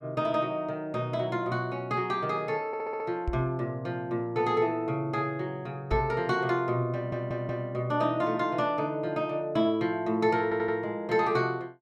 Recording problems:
stutter; at 2.5 s, at 7 s and at 10 s
microphone bump; at 3.5 s and at 6 s; peak 0 dB vs average level

